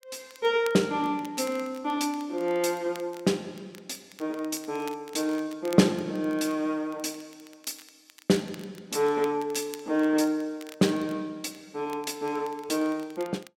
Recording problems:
crackling; vinyl, SNR 22 dB

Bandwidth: 16 kHz